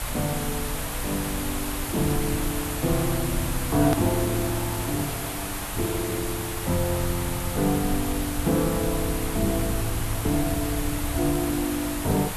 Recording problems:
hiss; SNR 4 dB
rumble; below 94 Hz, SNR 8 dB
click at an edit; at 4 s

